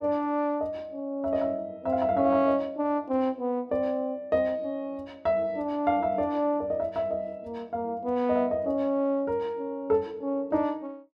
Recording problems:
none

